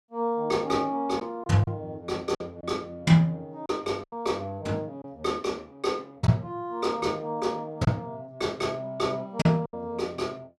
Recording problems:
lost packets; 4% of the sound replaced, filled with silence

